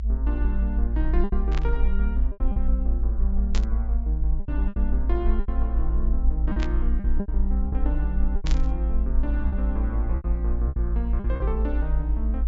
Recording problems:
treble missing; nothing above 8 kHz
low-frequency rumble; below 56 Hz, SNR -8 dB
lost packets; 8% of the sound replaced, filled with repeated pitch periods
burst of static; 4 times, first at 1.5 s; peak +3 dB vs average level

